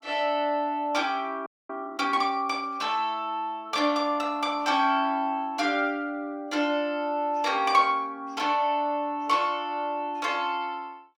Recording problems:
audio freezing; at 1.5 s

